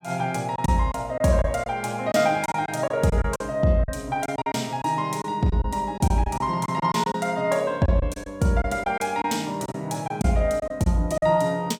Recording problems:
lost packets; 9% of the sound replaced, filled with silence

